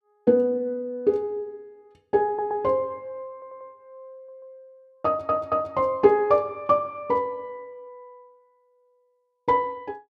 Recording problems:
stutter; 4 times, first at 2.5 s

